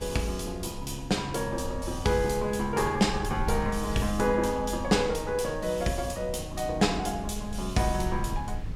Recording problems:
wind on the microphone; below 96 Hz, SNR 10 dB

